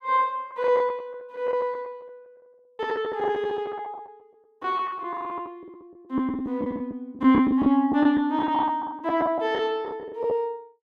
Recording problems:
lost packets; 11% of the sound replaced, filled with the last packet

